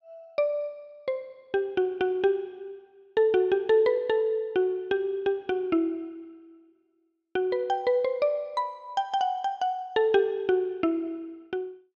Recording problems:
none

